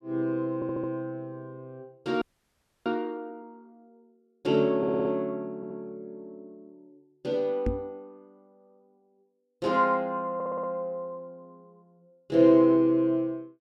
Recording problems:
audio stuttering; 4 times, first at 0.5 s
audio freezing; at 2 s for 0.5 s
microphone bump; at 7.5 s; peak +1 dB vs average level

